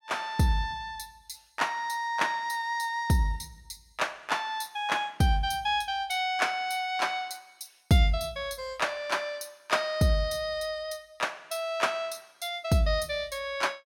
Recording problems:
none

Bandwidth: 17 kHz